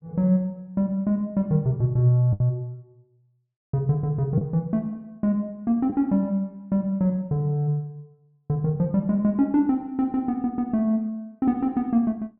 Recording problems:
treble missing; nothing above 5.5 kHz
lost packets; 1.1% of the sound replaced, filled with the last packet

